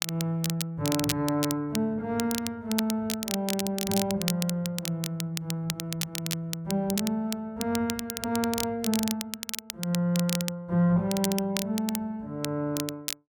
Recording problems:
crackling; vinyl, SNR 5 dB

